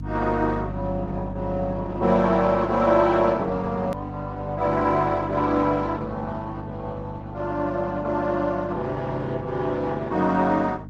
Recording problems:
codec artefacts; Opus, log-spectral distance 3 dB
electrical hum; 50 Hz, harmonics up to 300 Hz, SNR 9 dB
click at an edit; at 4 s

